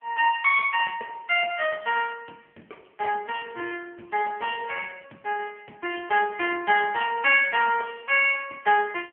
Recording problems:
telephone audio; 300 Hz to 3.2 kHz, AMR-NB

